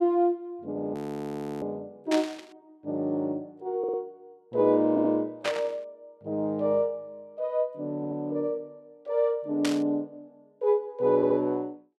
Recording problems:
frozen audio; at 1 s for 0.5 s
static burst; at 2 s, at 5.5 s and at 9.5 s; peak +1 dB vs average level
audio stuttering; 4 times, first at 4 s

